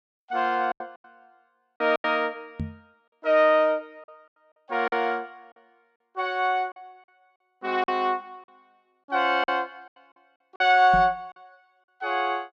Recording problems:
packet loss; 8% of the sound replaced, filled with silence
knock on the microphone; at 2.5 s and at 11 s; peak -3 dB vs average level

